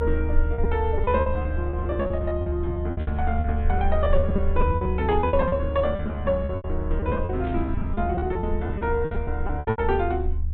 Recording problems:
treble missing; nothing above 4 kHz
hum; 50 Hz, harmonics up to 450 Hz, SNR 14 dB
rumble; below 76 Hz, SNR 2 dB
packet loss; 18% of the sound replaced, filled with repeated pitch periods
burst of static; at 3 s, at 7.5 s and at 9 s; peak -14 dB vs average level

